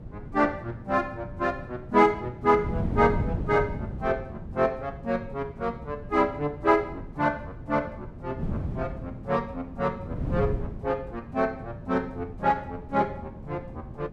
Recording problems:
wind on the microphone; below 220 Hz, SNR 9 dB

